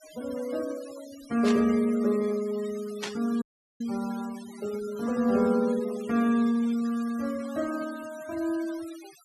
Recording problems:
noise reduction artefacts; signal-to-artefact ratio 18 dB
static burst; at 1.5 s and at 3 s; peak -2 dB vs average level
audio cutting out; at 3.5 s

